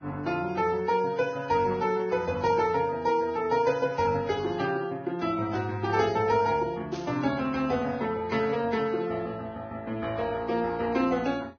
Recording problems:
lossy codec; Vorbis, log-spectral distance 3 dB, nothing above 5.3 kHz
burst of static; 4 times, first at 2.5 s; peak -12 dB vs average level

